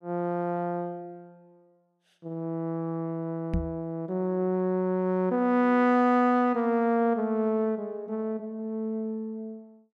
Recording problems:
microphone bump; at 3.5 s; peak +2 dB vs average level

